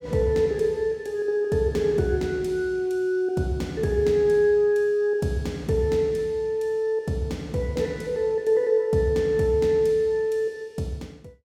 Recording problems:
none

